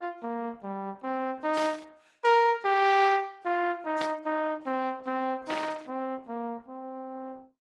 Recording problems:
codec artefacts; Opus, then AAC, log-spectral distance 3 dB
burst of static; at 1.5 s, at 4 s and at 5.5 s; peak -2 dB vs average level

